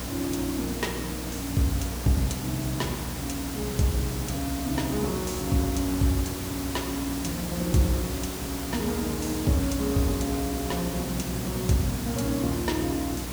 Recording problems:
hum; 60 Hz, harmonics up to 300 Hz, SNR 10 dB
hiss; slope -3 dB per octave, SNR 6 dB

